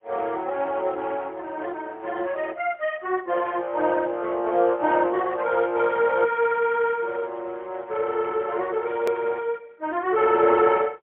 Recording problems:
telephone audio; 300 Hz to 3.3 kHz, AMR-NB, then MP3
edit click; at 9 s

